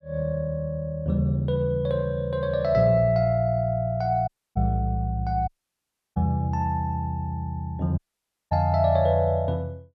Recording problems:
audio cutting out; at 4.5 s, at 5.5 s for 0.5 s and at 8 s for 0.5 s

